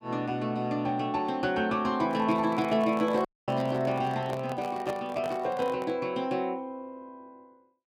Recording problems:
microphone handling noise; from 2 to 6 s; peak -5 dB vs average level
audio cutting out; at 3.5 s

